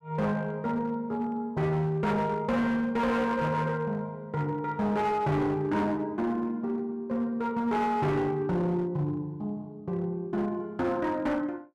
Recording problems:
distorted audio; hard clipping, uneven, signal-to-distortion ratio 11 dB

